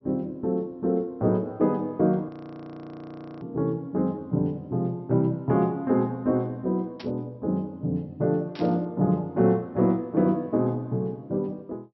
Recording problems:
treble cut off; nothing above 5.7 kHz
audio freezing; at 2.5 s for 1 s
burst of static; at 7 s and at 8.5 s; peak -11 dB vs average level

